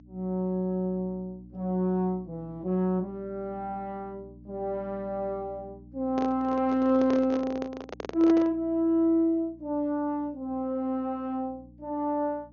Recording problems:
treble cut off; nothing above 6.6 kHz
hum; 60 Hz, harmonics up to 300 Hz, SNR 23 dB
handling noise; from 6 to 8.5 s; peak -2 dB vs average level

